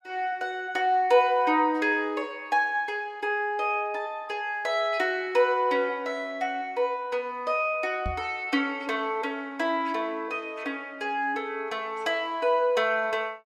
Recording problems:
knock on the microphone; at 8 s; peak -3 dB vs average level

